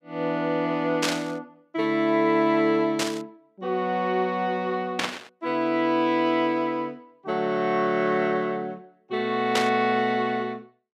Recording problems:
static burst; 4 times, first at 1 s; peak +3 dB vs average level

